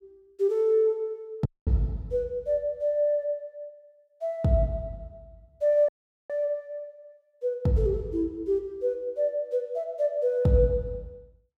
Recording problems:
audio cutting out; at 1.5 s and at 6 s

